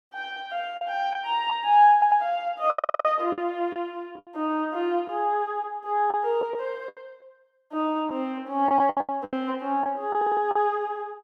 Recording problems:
lost packets; 8% of the sound replaced, filled with the last packet
stutter; at 2 s, at 2.5 s and at 10 s

